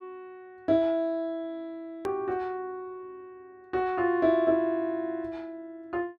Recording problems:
edit click; at 2 s

